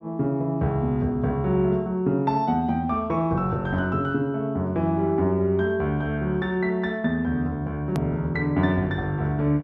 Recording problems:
hard cut with a click; at 8 s

